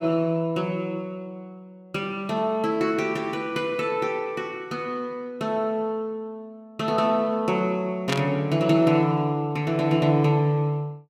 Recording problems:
burst of static; at 8 s; peak +1 dB vs average level

